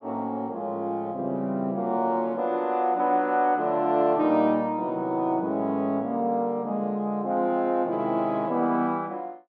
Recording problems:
none

